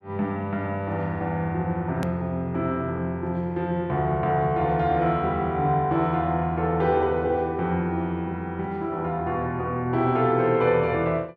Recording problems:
edit click; at 2 s

